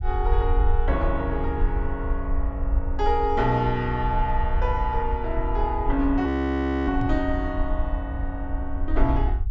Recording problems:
treble cut off; nothing above 8 kHz
rumble; below 62 Hz, SNR 2 dB
audio freezing; at 6.5 s for 0.5 s
microphone thump; at 7 s; peak +2 dB vs average level

